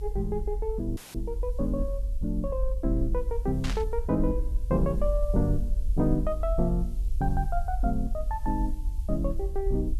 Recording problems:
hiss; SNR 29 dB
rumble; below 50 Hz, SNR 2 dB
dropout; at 1 s; filled with static
static burst; at 3.5 s; peak -2 dB vs average level

